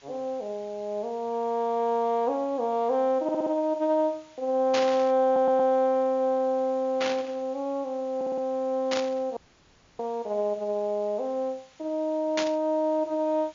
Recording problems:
low-pass filter; nothing above 7.1 kHz
background hiss; slope 0 dB per octave, SNR 29 dB
audio stuttering; at 3 s, at 5.5 s and at 8 s
burst of static; 4 times, first at 4.5 s; peak +1 dB vs average level
dropout; at 9.5 s for 0.5 s

